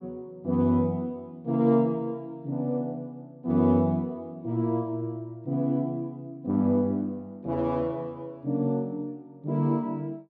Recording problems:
none

